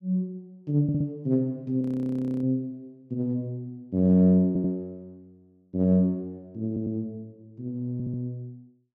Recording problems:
stutter; 4 times, first at 1 s
frozen audio; at 2 s for 0.5 s

